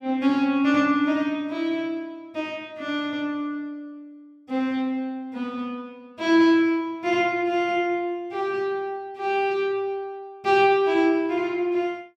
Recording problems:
none

